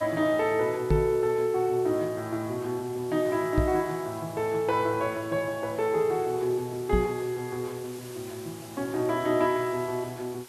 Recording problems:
background hiss; slope -1 dB per octave, SNR 20 dB
microphone bump; at 1 s, at 3.5 s and at 7 s; peak +5 dB vs average level

